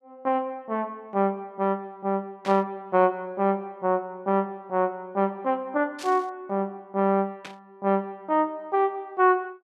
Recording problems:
burst of static; at 2.5 s, at 6 s and at 7.5 s; peak -8 dB vs average level

